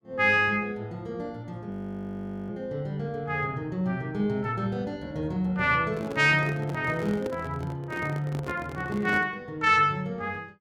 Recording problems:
audio freezing; at 1.5 s for 1 s
handling noise; from 6 to 9.5 s; peak -5 dB vs average level

